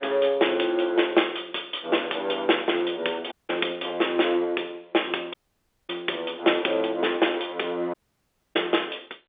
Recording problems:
telephone audio; 280 Hz to 3.6 kHz, G.711
audio cutting out; at 3.5 s, at 5.5 s for 0.5 s and at 8 s for 0.5 s

